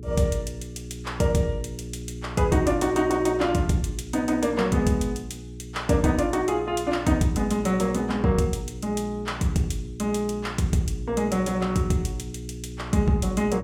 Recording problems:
mains hum; 60 Hz, harmonics up to 420 Hz, SNR 13 dB

